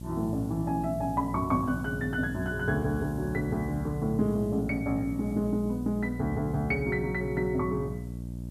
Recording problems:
hum; 60 Hz, harmonics up to 600 Hz, SNR 8 dB
background hiss; slope +1 dB per octave, SNR 27 dB

